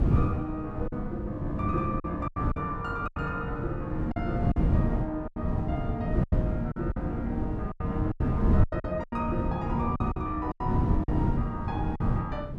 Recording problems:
wind on the microphone; below 200 Hz, SNR -3 dB
packet loss; 10% of the sound replaced, filled with silence

